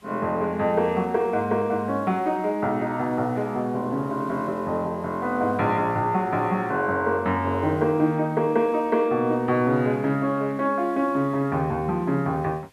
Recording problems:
hiss; slope -2 dB per octave, SNR 30 dB

